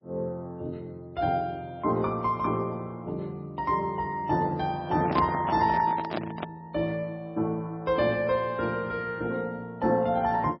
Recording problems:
lossy compression; MP3, log-spectral distance 2 dB, nothing above 4.5 kHz
microphone handling noise; from 5 to 6.5 s; peak +2 dB vs average level

